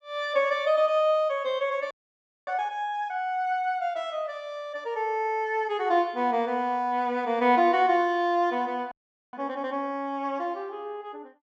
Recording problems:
audio freezing; at 2 s for 0.5 s and at 9 s

